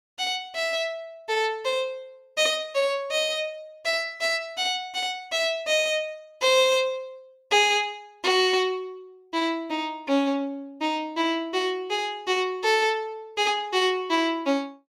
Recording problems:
none

